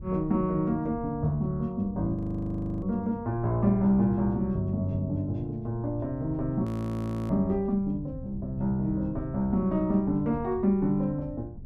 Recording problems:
wind on the microphone; below 140 Hz, SNR 15 dB
frozen audio; at 2 s for 0.5 s and at 6.5 s for 0.5 s

